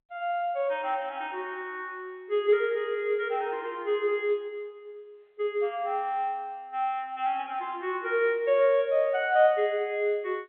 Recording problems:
telephone audio; 340 Hz to 3.6 kHz, G.711

